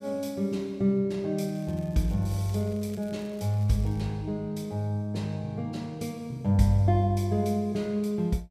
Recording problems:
crackling; from 1.5 to 4 s; loose cable, SNR 28 dB

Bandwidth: 15 kHz